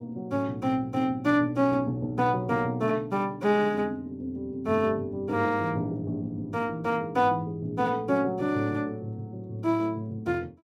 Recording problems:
none

